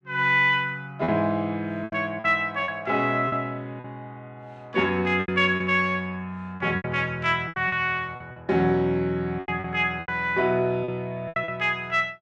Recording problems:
lost packets; 9% of the sound replaced, filled with repeated pitch periods

